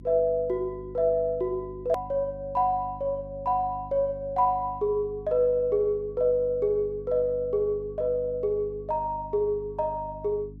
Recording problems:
hum; 50 Hz, harmonics up to 300 Hz, SNR 17 dB
edit click; at 2 s

